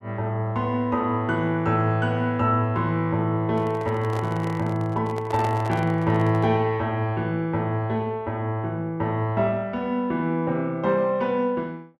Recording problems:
handling noise; from 3.5 to 6.5 s; peak -5 dB vs average level

